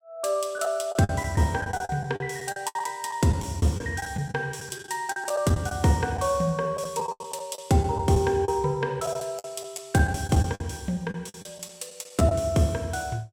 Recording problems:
packet loss; 11% of the sound replaced, filled with the last packet

